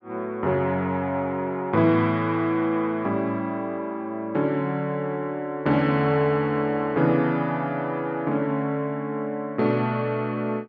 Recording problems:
none

